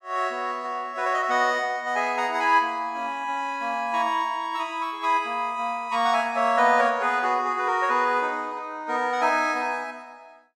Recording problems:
none

